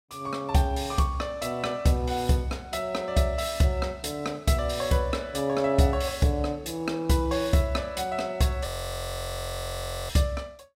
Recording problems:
frozen audio; at 8.5 s for 1.5 s

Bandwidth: 16 kHz